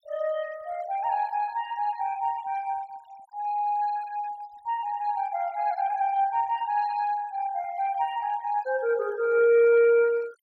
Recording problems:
denoising artefacts; signal-to-artefact ratio 24 dB

